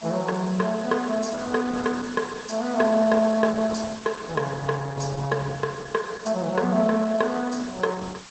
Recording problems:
codec artefacts; Opus, log-spectral distance 7 dB, nothing above 7.3 kHz
hiss; SNR 18 dB

